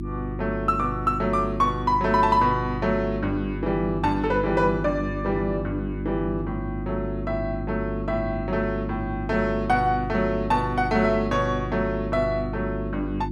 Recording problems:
hum; 50 Hz, harmonics up to 350 Hz, SNR 6 dB

